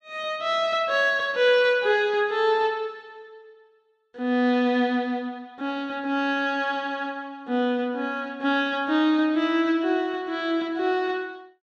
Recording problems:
none

